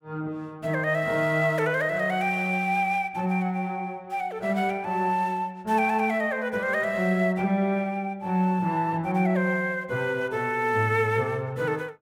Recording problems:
none

